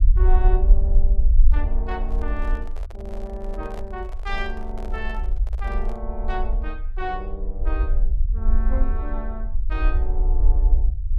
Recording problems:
rumble; below 46 Hz, strongest tone 22 Hz, SNR -9 dB
microphone handling noise; from 2 to 6 s; peak -3 dB vs average level

